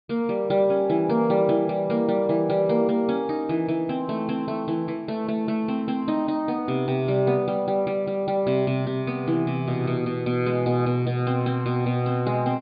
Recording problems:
treble missing; nothing above 4.7 kHz

